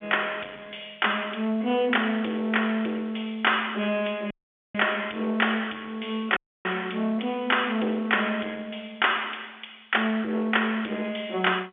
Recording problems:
telephone audio; 280 Hz to 3.5 kHz, G.711
distorted audio; soft clipping, signal-to-distortion ratio 16 dB
audio cutting out; at 4.5 s and at 6.5 s

